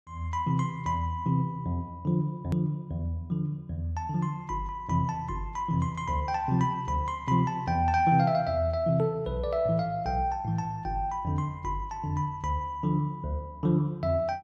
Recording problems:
edit click; at 2.5 s

